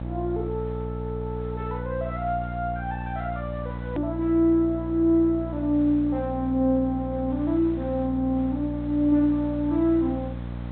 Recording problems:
treble cut off; nothing above 4 kHz
hum; 60 Hz, harmonics up to 900 Hz, SNR 8 dB
hiss; SNR 26 dB
hard cut with a click; at 4 s

